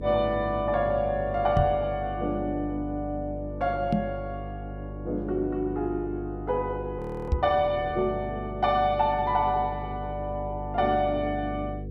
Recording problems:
hum; 50 Hz, harmonics up to 500 Hz, SNR 10 dB
microphone thump; at 1.5 s, at 4 s and at 7.5 s; peak +6 dB vs average level
audio freezing; at 7 s

